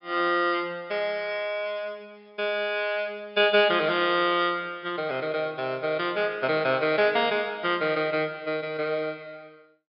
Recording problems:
low-pass filter; nothing above 5.5 kHz

